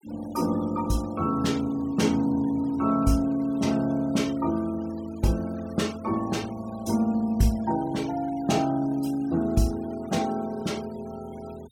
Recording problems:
noise reduction artefacts; signal-to-artefact ratio 22 dB

